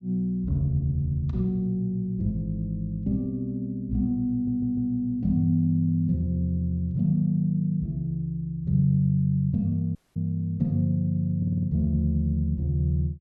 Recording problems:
stutter; at 4.5 s and at 11 s
dropout; at 10 s

